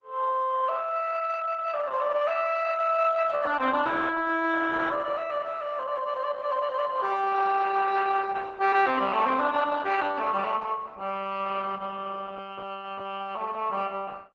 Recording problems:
lossy codec; Opus, log-spectral distance 4 dB

